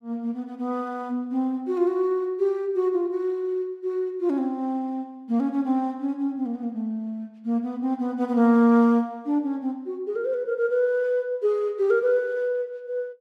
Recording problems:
none

